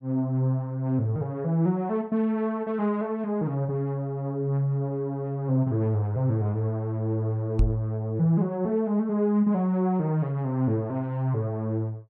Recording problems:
microphone thump; at 7.5 s; peak +6 dB vs average level

